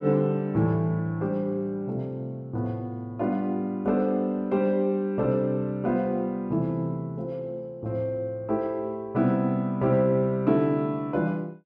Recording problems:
none

